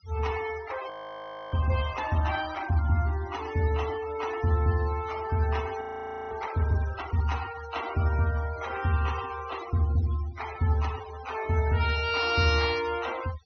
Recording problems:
treble cut off; nothing above 6.4 kHz
denoising artefacts; signal-to-artefact ratio 14 dB
frozen audio; at 1 s for 0.5 s and at 6 s for 0.5 s

